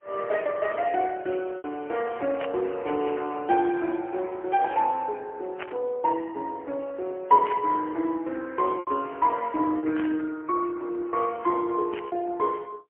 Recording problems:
telephone audio; 260 Hz to 2.3 kHz, AMR-NB, then MP3
packet loss; 2% of the sound replaced, filled with repeated pitch periods
burst of static; 5 times, first at 2.5 s; peak -4 dB vs average level

